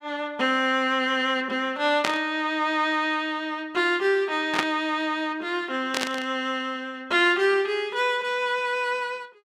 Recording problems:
burst of static; at 2 s, at 4.5 s and at 6 s; peak +4 dB vs average level

